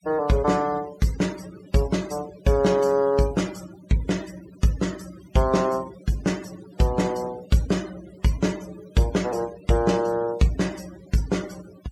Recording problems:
noise reduction artefacts; signal-to-artefact ratio 19 dB

